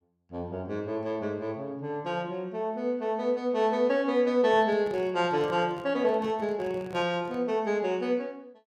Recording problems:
handling noise; from 4.5 to 7.5 s; peak -10 dB vs average level

